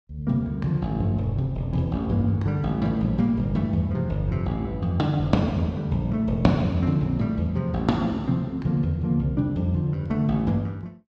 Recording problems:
none

